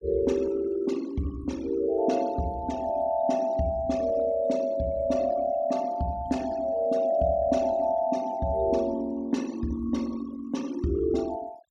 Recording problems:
noise reduction artefacts; signal-to-artefact ratio 23 dB

